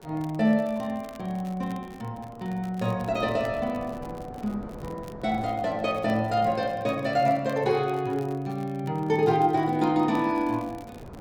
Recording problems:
wind noise; below 620 Hz, SNR 19 dB
crackle; vinyl, SNR 27 dB

